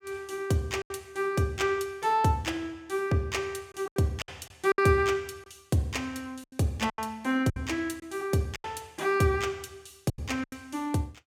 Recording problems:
packet loss; 8% of the sound replaced, filled with silence

